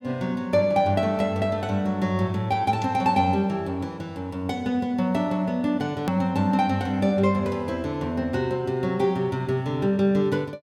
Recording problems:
click at an edit; at 6 s

